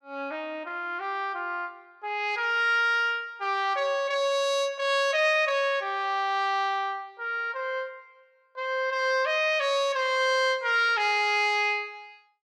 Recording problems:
none

